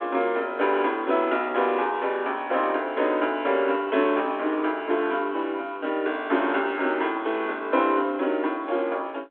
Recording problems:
telephone audio; 260 Hz to 3.5 kHz, G.726

